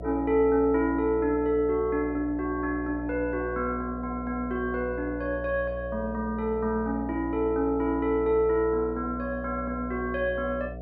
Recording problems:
hum; 60 Hz, harmonics up to 720 Hz, SNR 11 dB

